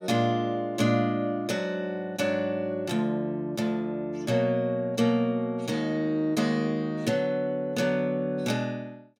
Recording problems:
none

